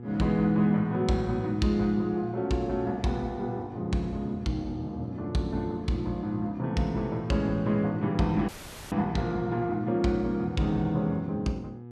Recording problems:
mains hum; 60 Hz, harmonics up to 840 Hz, SNR 14 dB
audio cutting out; at 8.5 s

